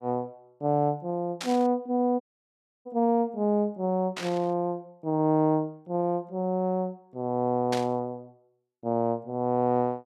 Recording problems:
burst of static; at 1.5 s, at 4 s and at 7.5 s; peak -2 dB vs average level
audio cutting out; at 2 s for 0.5 s

